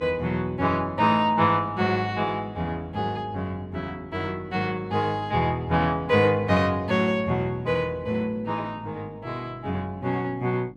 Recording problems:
hum; 50 Hz, harmonics up to 650 Hz, SNR 22 dB

